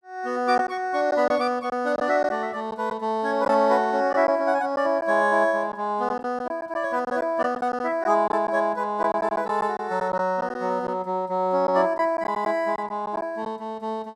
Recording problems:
packet loss; 5% of the sound replaced, filled with silence

